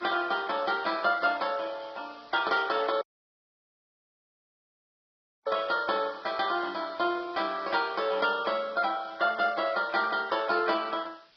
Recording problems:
codec artefacts; Vorbis, then MP2, log-spectral distance 10 dB, nothing above 5 kHz
background hiss; slope +1 dB per octave, SNR 27 dB
dropout; at 3 s for 2.5 s

